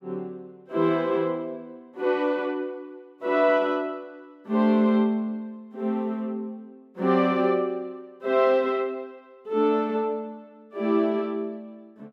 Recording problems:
none

